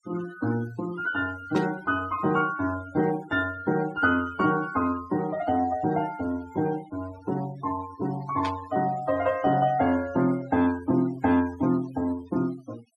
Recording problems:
denoising artefacts; signal-to-artefact ratio 19 dB
burst of static; at 1.5 s and at 8.5 s; peak -5 dB vs average level

